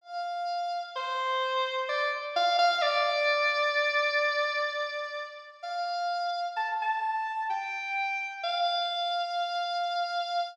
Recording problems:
none

